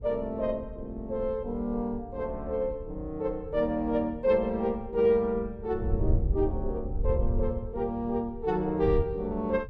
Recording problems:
wind on the microphone; below 84 Hz, SNR 7 dB

